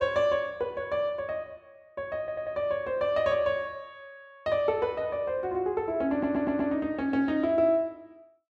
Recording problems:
stutter; at 2 s and at 6 s

